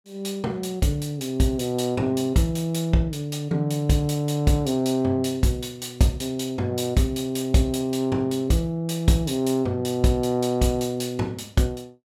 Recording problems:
none

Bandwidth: 16 kHz